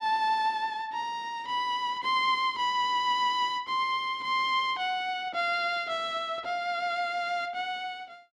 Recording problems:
none

